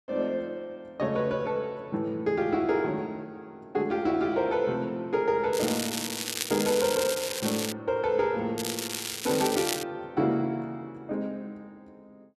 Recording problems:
crackling; from 5.5 to 7.5 s and from 8.5 to 10 s; loose cable, SNR 3 dB

